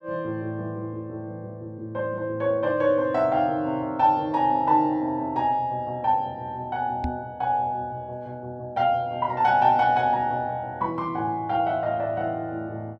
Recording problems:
microphone bump; at 7 s; peak -1 dB vs average level

